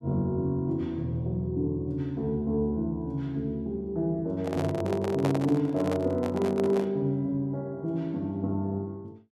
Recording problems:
handling noise; from 4.5 to 7 s; peak +2 dB vs average level

